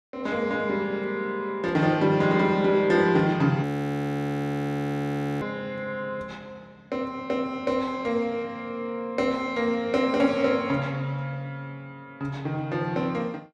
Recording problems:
audio freezing; at 3.5 s for 2 s

